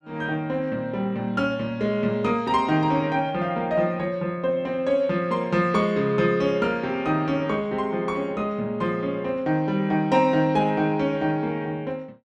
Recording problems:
none

